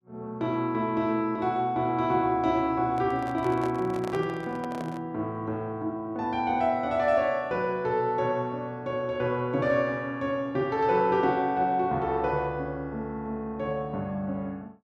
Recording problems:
handling noise; from 3 to 5 s; peak -6 dB vs average level

